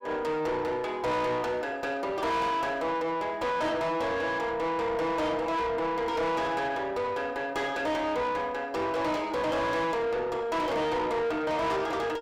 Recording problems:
distorted audio; soft clipping, signal-to-distortion ratio 6 dB

